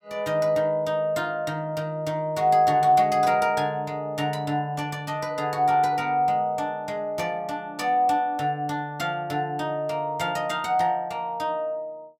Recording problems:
none

